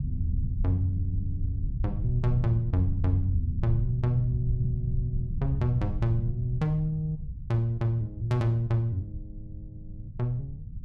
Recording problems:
rumble; below 110 Hz, SNR 5 dB

